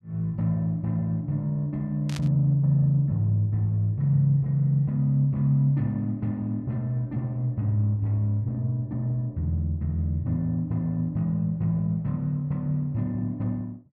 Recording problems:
burst of static; at 2 s; peak -8 dB vs average level

